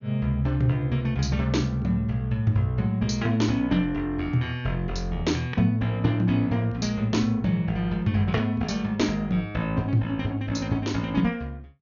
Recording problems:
low-pass filter; nothing above 6.8 kHz

